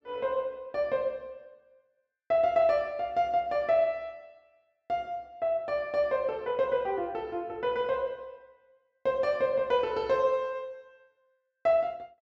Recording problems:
treble missing; nothing above 8 kHz

